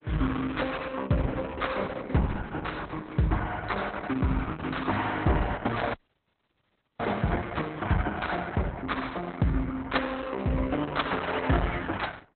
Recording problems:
lossy codec; Opus, log-spectral distance 4 dB, nothing above 4 kHz
frozen audio; at 6 s for 1 s

